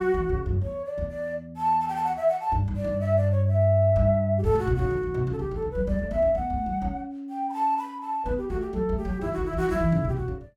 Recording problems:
none

